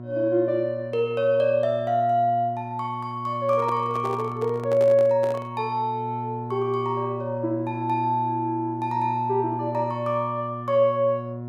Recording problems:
hum; 60 Hz, harmonics up to 1.1 kHz, SNR 11 dB
handling noise; from 3.5 to 5.5 s; peak -5 dB vs average level

